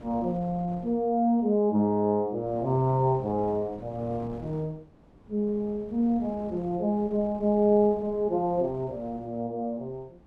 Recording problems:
wind noise; below 460 Hz, SNR 21 dB

